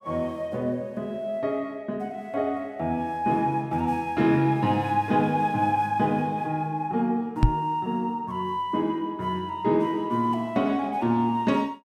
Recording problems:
microphone thump; at 7.5 s; peak +10 dB vs average level

